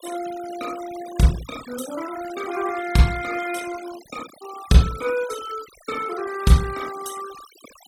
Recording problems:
noise reduction artefacts; signal-to-artefact ratio 16 dB

